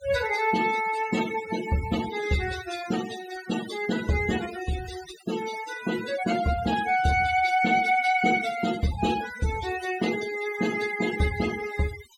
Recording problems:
noise reduction artefacts; signal-to-artefact ratio 11 dB

